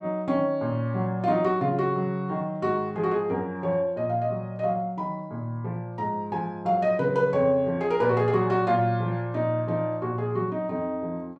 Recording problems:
none

